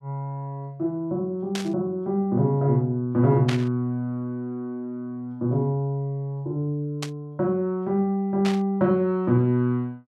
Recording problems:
static burst; 4 times, first at 1.5 s; peak -1 dB vs average level

